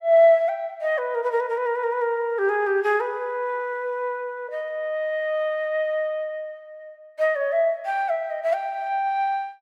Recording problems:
none

